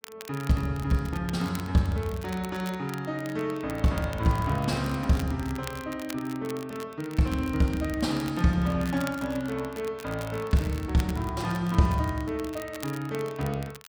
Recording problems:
crackle; vinyl, SNR 17 dB

